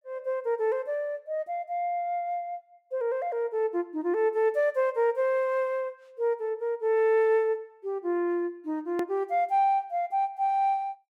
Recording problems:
hard cut with a click; at 9 s

